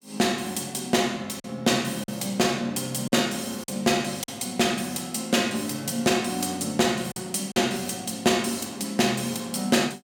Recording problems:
packet loss; 3% of the sound replaced, filled with silence

